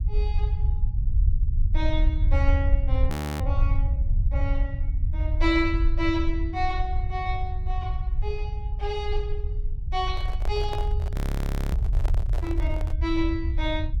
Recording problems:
rumble; below 72 Hz, SNR -4 dB
audio freezing; at 3 s and at 11 s for 0.5 s
handling noise; from 10 to 13 s; peak -2 dB vs average level

